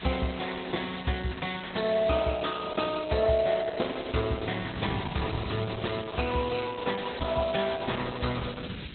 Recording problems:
lossy compression; Opus, log-spectral distance 15 dB, nothing above 4 kHz
background hiss; SNR 14 dB
wind on the microphone; below 230 Hz, SNR 12 dB

